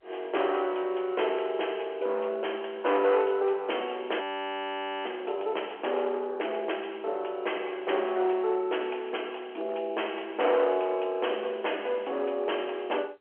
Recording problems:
phone line; 320 Hz to 3.2 kHz, G.711
distortion; hard clipping, uneven, signal-to-distortion ratio 13 dB
audio freezing; at 4 s for 1 s

